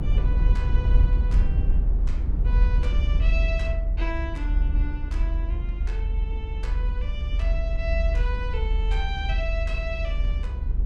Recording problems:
electrical hum; 60 Hz, harmonics up to 480 Hz, SNR 21 dB
low-frequency rumble; below 66 Hz, strongest tone 42 Hz, SNR -10 dB

